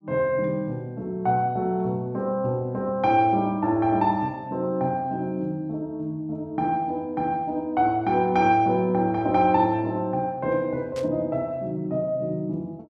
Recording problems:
burst of static; at 11 s; peak -13 dB vs average level

